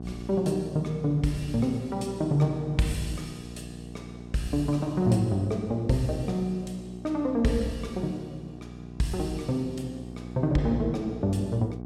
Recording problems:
hum; 60 Hz, harmonics up to 1.1 kHz, SNR 13 dB

